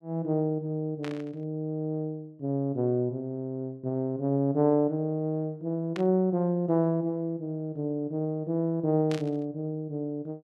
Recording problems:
static burst; at 1 s, at 6 s and at 9 s; peak -6 dB vs average level

